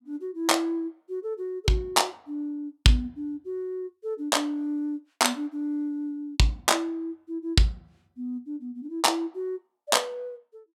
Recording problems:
none

